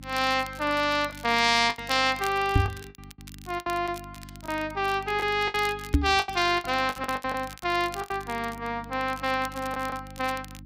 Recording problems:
hum; 50 Hz, harmonics up to 300 Hz, SNR 19 dB
crackling; vinyl, SNR 19 dB
packet loss; 10% of the sound replaced, filled with the last packet
microphone thump; at 2.5 s and at 6 s; peak +8 dB vs average level

